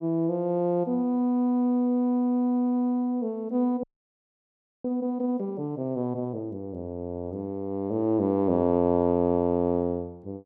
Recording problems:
frozen audio; at 4 s for 1 s

